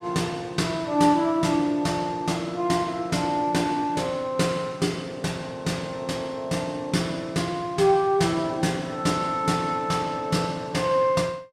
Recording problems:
none

